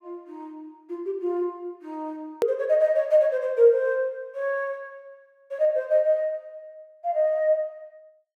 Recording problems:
click at an edit; at 2.5 s

